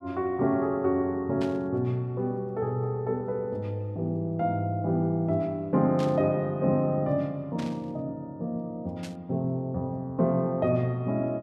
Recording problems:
burst of static; 4 times, first at 1.5 s; peak -9 dB vs average level

